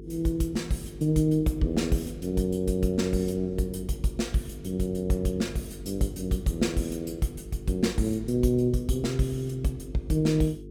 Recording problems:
hum; 50 Hz, harmonics up to 450 Hz, SNR 15 dB

